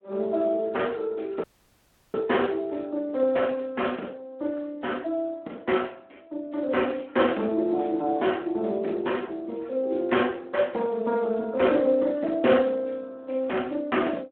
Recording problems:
telephone audio; 220 Hz to 3.3 kHz, Speex
audio cutting out; at 1.5 s for 0.5 s

